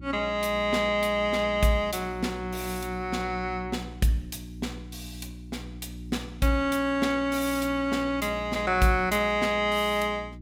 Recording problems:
mains hum; 60 Hz, harmonics up to 360 Hz, SNR 15 dB

